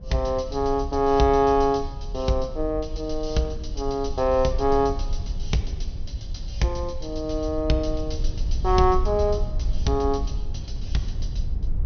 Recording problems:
treble cut off; nothing above 6.3 kHz
low-frequency rumble; below 62 Hz, SNR 8 dB

